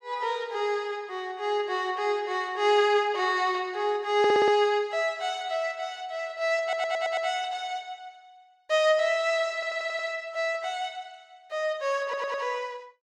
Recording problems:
stutter; 4 times, first at 4 s

